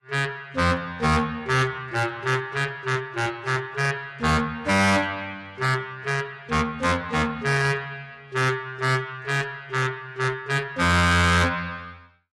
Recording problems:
lossy compression; AAC, log-spectral distance 2 dB, nothing above 11.3 kHz
distorted audio; hard clipping, signal-to-distortion ratio 6 dB

